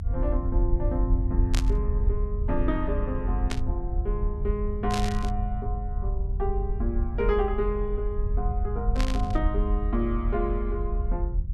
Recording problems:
low-frequency rumble; below 68 Hz, strongest tone 44 Hz, SNR -2 dB
static burst; 4 times, first at 1.5 s; peak +3 dB vs average level

